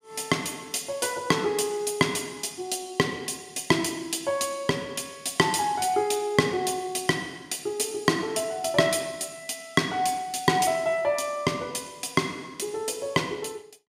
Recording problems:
none

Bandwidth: 15.5 kHz